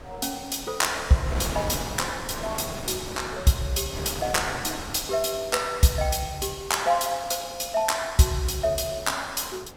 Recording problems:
wind noise; below 1.1 kHz, SNR 12 dB

